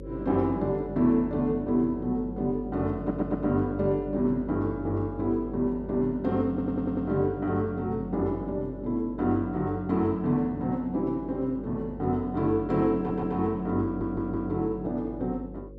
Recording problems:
hum; 50 Hz, harmonics up to 550 Hz, SNR 14 dB
stutter; 4 times, first at 3 s

